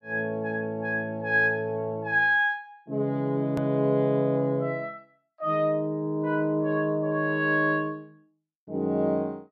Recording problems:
click at an edit; at 3.5 s

